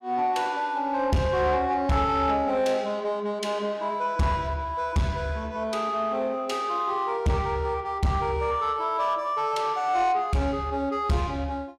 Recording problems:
distortion; soft clipping, signal-to-distortion ratio 11 dB

